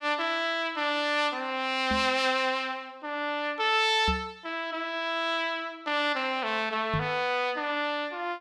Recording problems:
microphone thump; at 2 s, at 4 s and at 7 s; peak 0 dB vs average level

